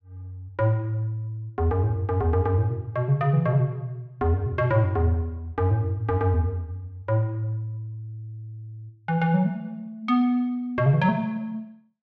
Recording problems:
none

